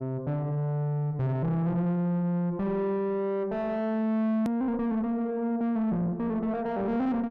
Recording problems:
distorted audio; soft clipping, signal-to-distortion ratio 8 dB
hard cut with a click; at 4.5 s

